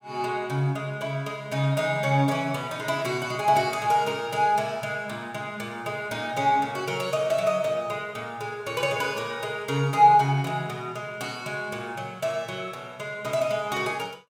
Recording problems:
none

